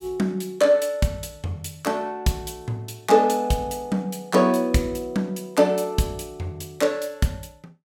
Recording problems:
none

